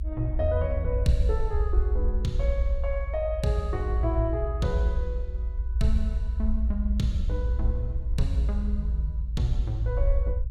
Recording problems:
low-frequency rumble; below 58 Hz, strongest tone 56 Hz, SNR -2 dB

